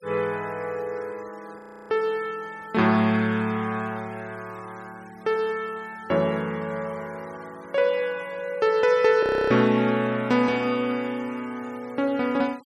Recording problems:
denoising artefacts; signal-to-artefact ratio 26 dB
audio freezing; at 1.5 s and at 9 s

